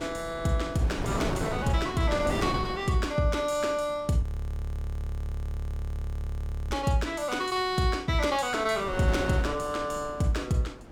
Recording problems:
wind noise; below 620 Hz, SNR 7 dB
frozen audio; at 4 s for 2.5 s

